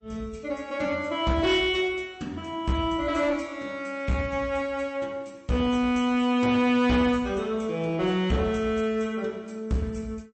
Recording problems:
lossy compression; MP3, log-spectral distance 2 dB, nothing above 8.2 kHz
distorted audio; hard clipping, uneven, signal-to-distortion ratio 10 dB

